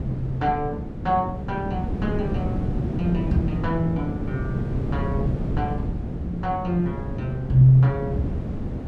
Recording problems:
wind on the microphone; below 250 Hz, SNR 4 dB

